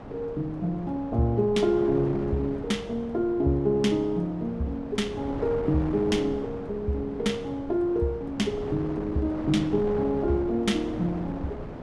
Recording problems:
wind on the microphone; below 590 Hz, SNR 11 dB

